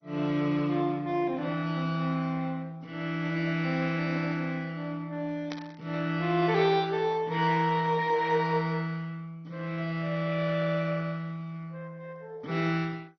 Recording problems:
lossy codec; MP2, log-spectral distance 3 dB, nothing above 5.5 kHz
static burst; at 5.5 s; peak -6 dB vs average level

